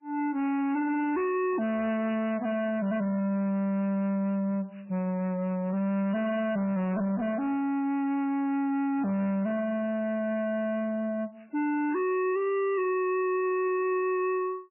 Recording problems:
codec artefacts; MP3, log-spectral distance 2 dB, nothing above 2.7 kHz
distorted audio; soft clipping, signal-to-distortion ratio 10 dB

